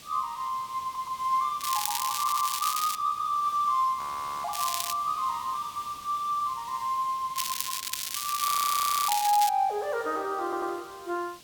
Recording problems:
background hiss; SNR 18 dB
audio stuttering; at 1 s, at 2 s and at 10 s
crackle; from 1.5 to 3 s, at 4.5 s and from 7.5 to 9.5 s; loose cable, SNR 2 dB
audio freezing; at 4 s and at 8.5 s for 0.5 s

